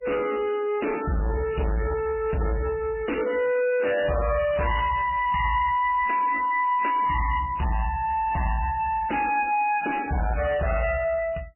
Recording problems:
lossy codec; MP3, log-spectral distance 5 dB, nothing above 2.5 kHz
distorted audio; soft clipping, signal-to-distortion ratio 7 dB

